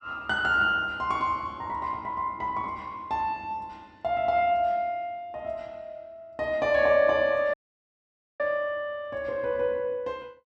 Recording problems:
dropout; at 7.5 s for 1 s

